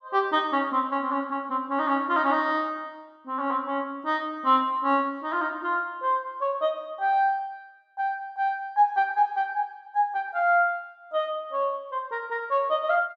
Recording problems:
none

